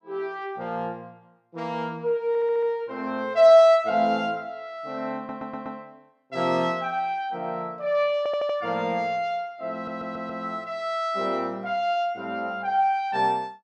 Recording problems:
audio stuttering; 4 times, first at 2.5 s

